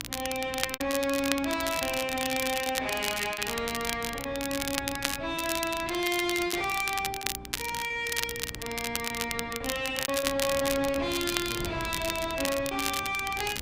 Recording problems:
distortion; soft clipping, signal-to-distortion ratio 10 dB
mains hum; 60 Hz, harmonics up to 360 Hz, SNR 18 dB
wind noise; below 460 Hz, SNR 15 dB
crackling; vinyl, SNR 4 dB
packet loss; 8% of the sound replaced, filled with repeated pitch periods

